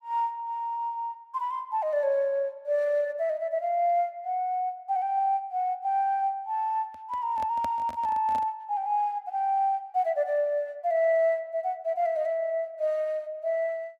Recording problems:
microphone handling noise; from 7 to 8.5 s; peak -6 dB vs average level

